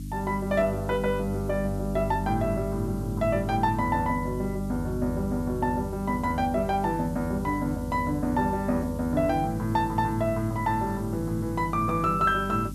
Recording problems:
hum; 50 Hz, harmonics up to 300 Hz, SNR 8 dB
background hiss; slope +4 dB per octave, SNR 24 dB

